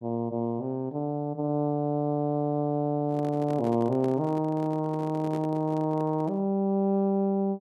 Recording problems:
microphone handling noise; from 3 to 6.5 s; peak -7 dB vs average level

